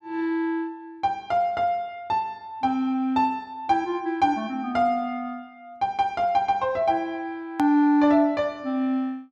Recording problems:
hard cut with a click; at 7.5 s

